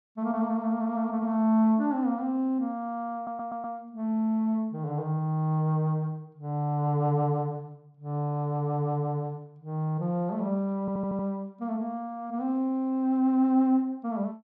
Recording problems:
audio stuttering; at 3 s and at 11 s

